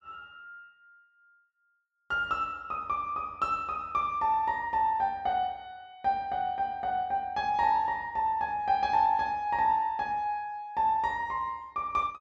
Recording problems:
none

